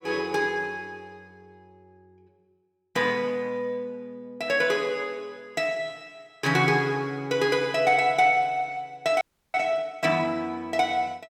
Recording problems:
audio freezing; at 9 s

